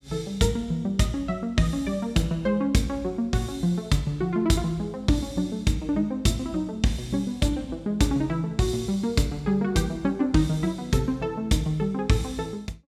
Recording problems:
none

